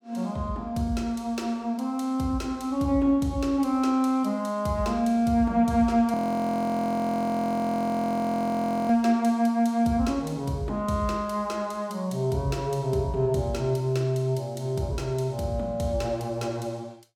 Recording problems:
audio freezing; at 6 s for 3 s

